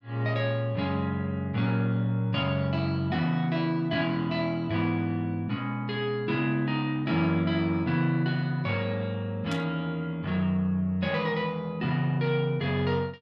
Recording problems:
static burst; at 9.5 s; peak -8 dB vs average level

